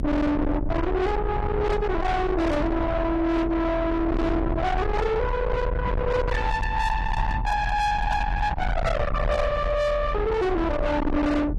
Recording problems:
lossy codec; AAC, log-spectral distance 2 dB, nothing above 12.7 kHz
distortion; soft clipping, signal-to-distortion ratio 6 dB
electrical hum; 60 Hz, harmonics up to 780 Hz, SNR 15 dB
low-frequency rumble; below 590 Hz, SNR 4 dB

